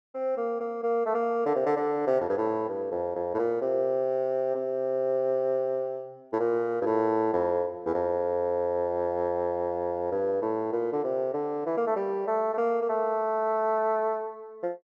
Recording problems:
none

